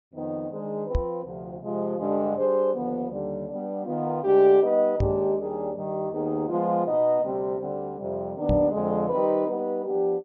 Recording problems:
low-pass filter; nothing above 8 kHz
microphone bump; at 1 s, at 5 s and at 8.5 s; peak +3 dB vs average level

